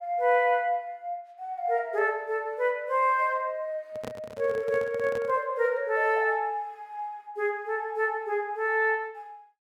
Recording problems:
microphone handling noise; from 4 to 5.5 s; peak -6 dB vs average level

